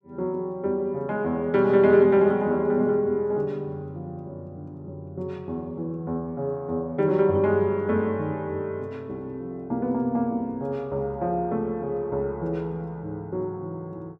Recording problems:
none

